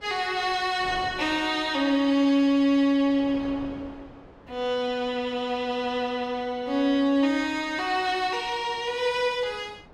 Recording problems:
wind noise; below 820 Hz, SNR 22 dB

